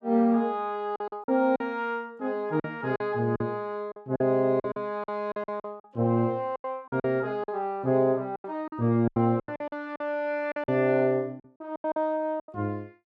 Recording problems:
lost packets; 12% of the sound replaced, filled with silence

